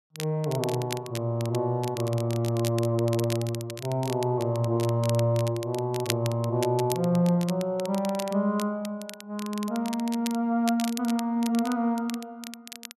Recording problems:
crackling; vinyl, SNR 13 dB

